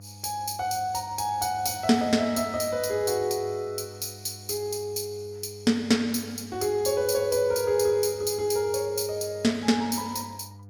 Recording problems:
electrical hum; 50 Hz, harmonics up to 700 Hz, SNR 20 dB

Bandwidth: 18 kHz